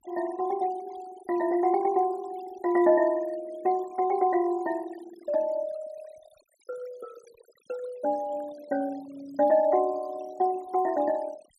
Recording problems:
denoising artefacts; signal-to-artefact ratio 23 dB

